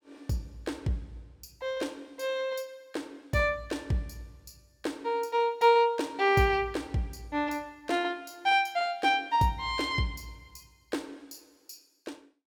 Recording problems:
none

